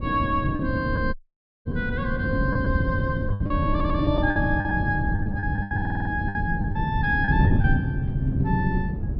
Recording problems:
treble missing; nothing above 5.4 kHz
wind on the microphone; below 170 Hz, SNR 0 dB
packet loss; 9% of the sound replaced, filled with the last packet
audio cutting out; at 1 s for 0.5 s
stutter; at 3.5 s and at 6 s

